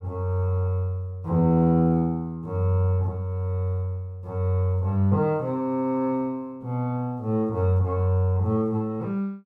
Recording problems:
none

